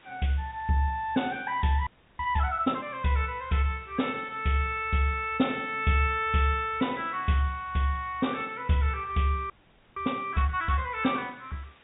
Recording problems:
treble cut off; nothing above 4 kHz
background hiss; SNR 27 dB
audio freezing; at 2 s and at 9.5 s

